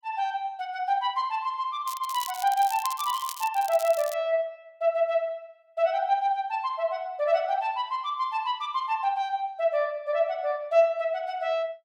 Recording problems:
crackling; from 2 to 4 s; loose cable, SNR 12 dB

